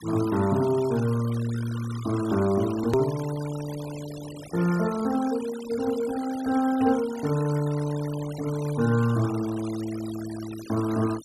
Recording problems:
noise reduction artefacts; signal-to-artefact ratio 16 dB
click at an edit; at 3 s

